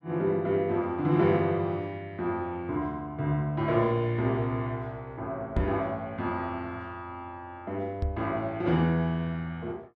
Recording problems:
knock on the microphone; at 5.5 s and at 8 s; peak +4 dB vs average level

